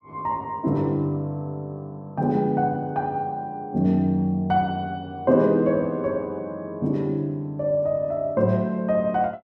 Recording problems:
none

